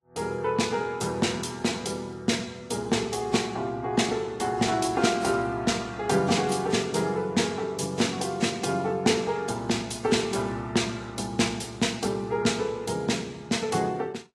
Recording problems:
lossy compression; AAC, then Vorbis, log-spectral distance 4 dB, nothing above 11 kHz

